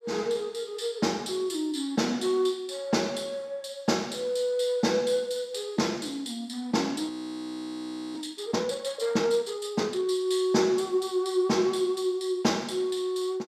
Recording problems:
audio freezing; at 7 s for 1 s

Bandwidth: 14.5 kHz